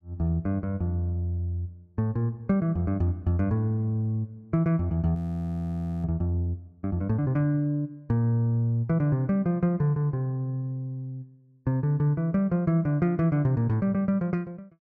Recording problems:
audio freezing; at 5 s for 1 s

